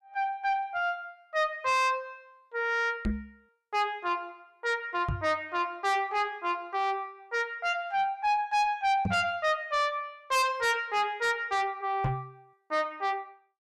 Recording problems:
distorted audio; soft clipping, signal-to-distortion ratio 8 dB
knock on the microphone; 4 times, first at 3 s; peak +3 dB vs average level

